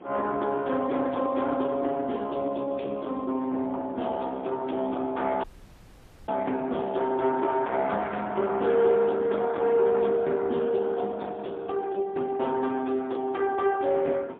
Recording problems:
phone line; 240 Hz to 3.5 kHz, AMR-NB, then MP3
distortion; hard clipping, uneven, signal-to-distortion ratio 14 dB
wind noise; below 830 Hz, SNR 23 dB
dropout; at 5.5 s for 1 s

